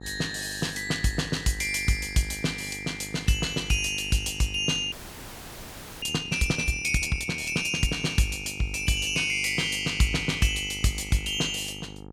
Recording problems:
hum; 50 Hz, harmonics up to 1.4 kHz, SNR 17 dB
frozen audio; at 5 s for 1 s

